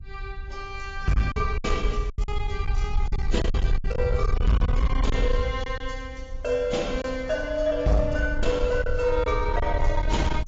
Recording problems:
lossy compression; AAC, log-spectral distance 2 dB, nothing above 7.3 kHz
distortion; soft clipping, signal-to-distortion ratio 11 dB
wind noise; below 64 Hz, SNR 3 dB
lost packets; 6% of the sound replaced, filled with silence

